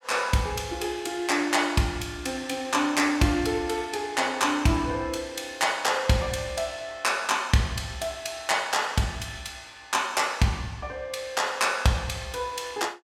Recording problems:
none

